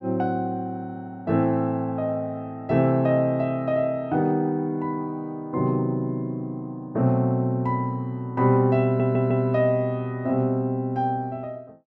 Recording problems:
audio stuttering; at 9 s

